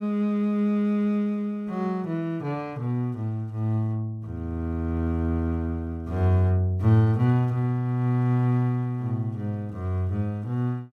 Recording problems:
none

